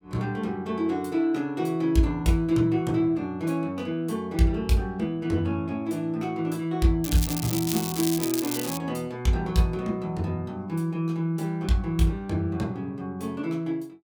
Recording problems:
crackling; from 7 to 9 s; loose cable, SNR 5 dB

